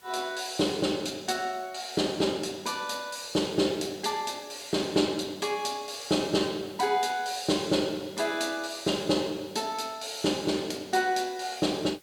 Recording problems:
hiss; slope -1 dB per octave, SNR 26 dB

